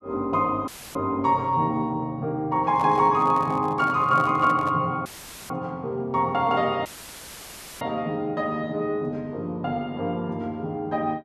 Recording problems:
dropout; at 0.5 s, at 5 s and at 7 s for 1 s; filled with static
microphone handling noise; from 2.5 to 5 s; peak -7 dB vs average level

